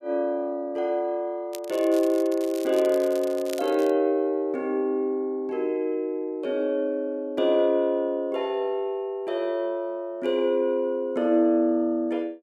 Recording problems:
crackle; from 1.5 to 4 s; loose cable, SNR 18 dB

